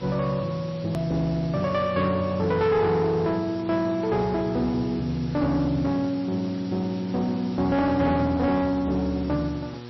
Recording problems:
lossy compression; MP3, then MP3, log-spectral distance 6 dB, nothing above 13.1 kHz
distortion; soft clipping, signal-to-distortion ratio 10 dB
hum; 60 Hz, harmonics up to 2.2 kHz, SNR 15 dB
background hiss; slope -1 dB per octave, SNR 21 dB
hard cut with a click; at 1 s

